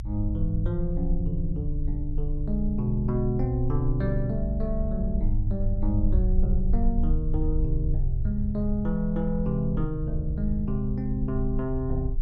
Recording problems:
low-frequency rumble; below 56 Hz, strongest tone 26 Hz, SNR 2 dB

